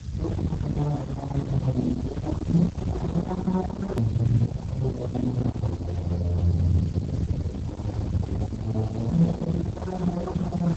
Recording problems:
codec artefacts; Speex, then Opus, log-spectral distance 2 dB, nothing above 13.1 kHz
distortion; soft clipping, signal-to-distortion ratio 7 dB
hiss; SNR 28 dB
rumble; below 220 Hz, SNR 6 dB
click at an edit; at 4 s

